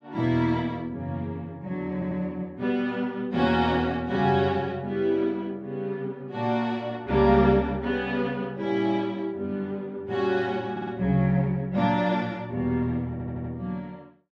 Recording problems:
audio stuttering; at 2 s, at 11 s and at 13 s

